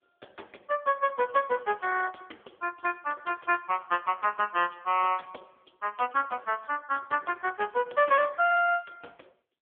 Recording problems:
telephone audio; 300 Hz to 3.3 kHz, AMR-NB

